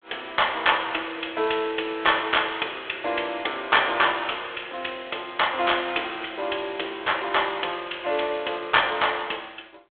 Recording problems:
telephone audio; 320 Hz to 3.5 kHz, G.726

